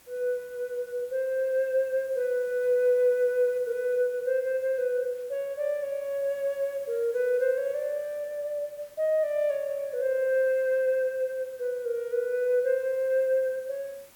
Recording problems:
background hiss; slope -2 dB per octave, SNR 26 dB

